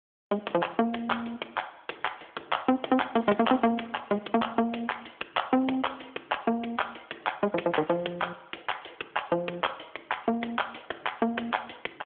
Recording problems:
phone line; 280 Hz to 3.4 kHz, AMR-NB

